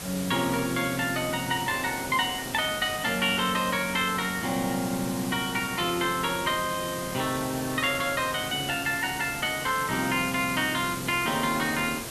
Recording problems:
hiss; slope -3 dB per octave, SNR 8 dB

